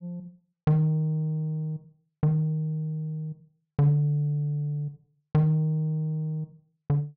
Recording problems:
low-pass filter; nothing above 6.7 kHz

